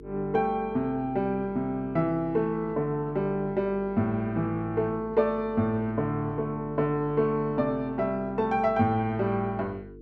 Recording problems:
mains hum; 50 Hz, harmonics up to 450 Hz, SNR 18 dB

